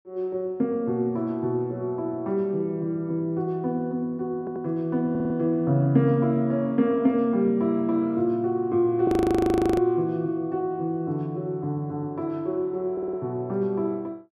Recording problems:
stutter; at 4.5 s, at 5 s and at 13 s
frozen audio; at 9 s for 0.5 s

